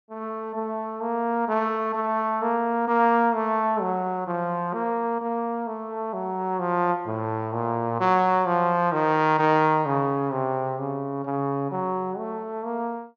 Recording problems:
treble missing; nothing above 6.7 kHz

